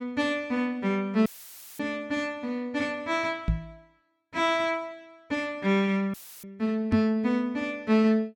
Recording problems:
dropout; at 1.5 s for 0.5 s and at 6 s; filled with static
knock on the microphone; at 3.5 s and at 7 s; peak +4 dB vs average level

